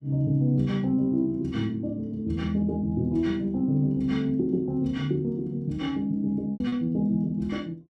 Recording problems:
packet loss; 1.5% of the sound replaced, filled with repeated pitch periods

